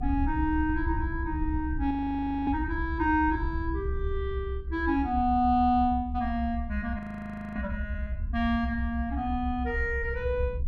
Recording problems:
low-frequency rumble; below 70 Hz, SNR 6 dB
frozen audio; at 2 s for 0.5 s and at 7 s for 0.5 s

